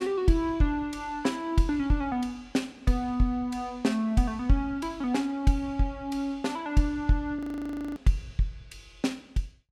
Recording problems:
audio freezing; at 7.5 s for 0.5 s

